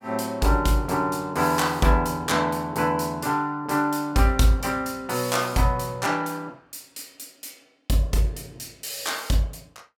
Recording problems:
none

